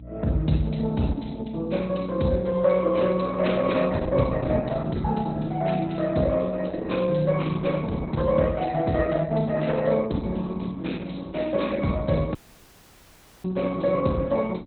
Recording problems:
lossy codec; Opus, log-spectral distance 4 dB, nothing above 4.1 kHz
hum; 60 Hz, harmonics up to 300 Hz, SNR 19 dB
dropout; at 12 s for 1 s

